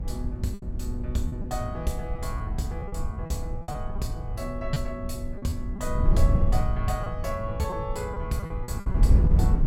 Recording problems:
wind on the microphone; below 84 Hz, SNR -4 dB
lost packets; 8% of the sound replaced, filled with repeated pitch periods

